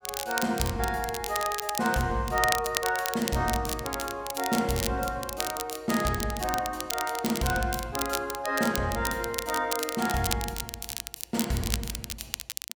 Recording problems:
crackle; vinyl, SNR 5 dB

